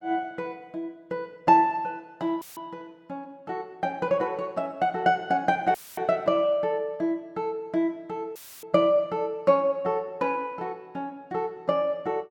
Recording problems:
dropout; at 2.5 s, at 6 s and at 8.5 s; filled with static

